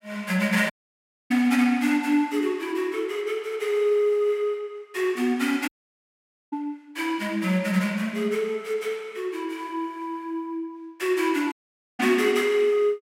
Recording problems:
audio cutting out; at 0.5 s for 0.5 s, at 5.5 s for 1 s and at 12 s

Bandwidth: 16 kHz